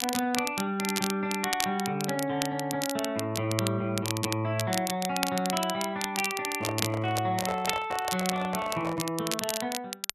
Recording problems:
crackle; vinyl, SNR 4 dB
microphone handling noise; from 6.5 to 9 s; peak -1 dB vs average level

